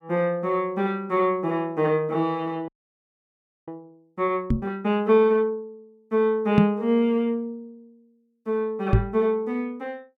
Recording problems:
audio freezing; at 2.5 s for 1 s
microphone bump; at 4.5 s, at 6.5 s and at 9 s; peak +8 dB vs average level

